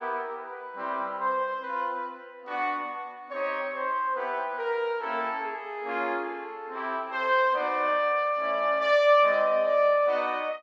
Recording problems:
none

